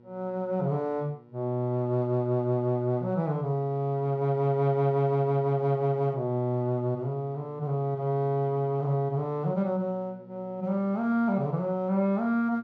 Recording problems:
electrical hum; 60 Hz, harmonics up to 1.3 kHz, SNR 26 dB

